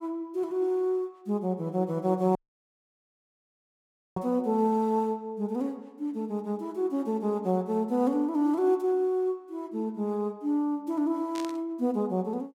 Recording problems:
dropout; at 2.5 s for 2 s
static burst; at 11 s; peak -8 dB vs average level

